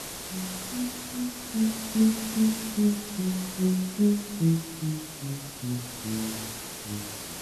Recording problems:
hiss; slope -2 dB per octave, SNR 7 dB

